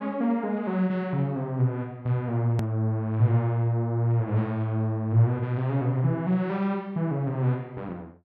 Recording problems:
hard cut with a click; at 2.5 s

